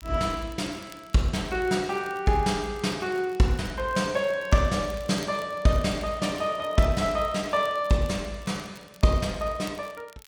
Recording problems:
crackle; vinyl, SNR 25 dB

